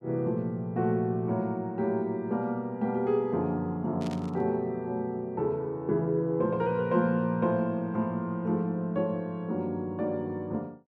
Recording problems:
static burst; at 4 s; peak -11 dB vs average level

